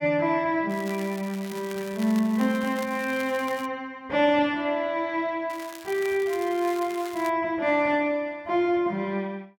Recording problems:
crackling; from 0.5 to 3.5 s and from 5.5 to 7.5 s; loose cable, SNR 17 dB

